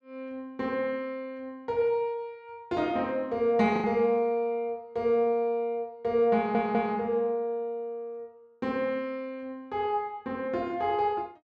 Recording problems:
packet loss; 0.8% of the sound replaced, filled with the last packet
stutter; at 6.5 s

